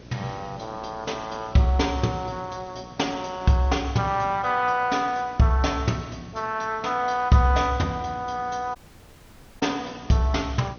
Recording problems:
codec artefacts; MP2, log-spectral distance 5 dB, nothing above 6.3 kHz
hum; 60 Hz, harmonics up to 1 kHz, SNR 23 dB
background hiss; SNR 25 dB
dropout; at 9 s for 1 s

